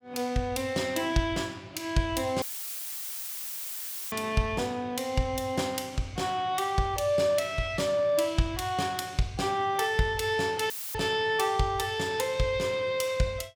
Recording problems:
dropout; at 2.5 s for 1.5 s and at 11 s; filled with static

